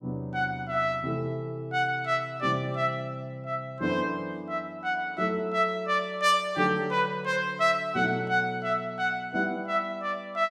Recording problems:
none

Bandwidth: 14.5 kHz